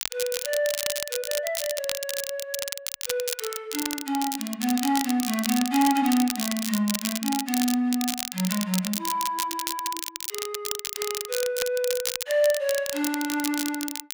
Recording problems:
crackle; vinyl, SNR 3 dB

